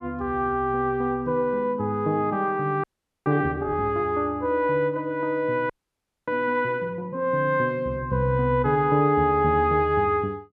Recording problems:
audio freezing; at 3 s and at 5.5 s for 0.5 s

